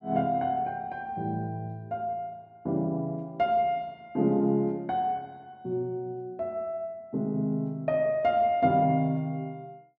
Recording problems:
none

